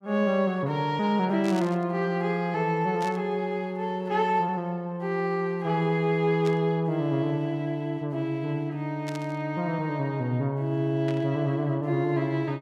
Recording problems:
burst of static; 5 times, first at 1.5 s; peak -9 dB vs average level

